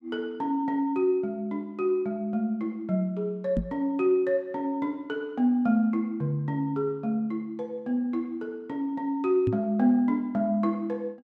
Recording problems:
knock on the microphone; at 3.5 s and at 9.5 s; peak +3 dB vs average level

